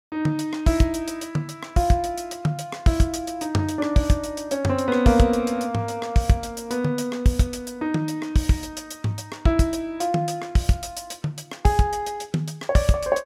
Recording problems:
none

